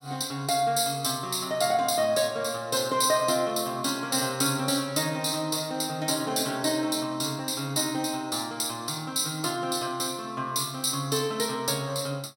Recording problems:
none

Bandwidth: 17 kHz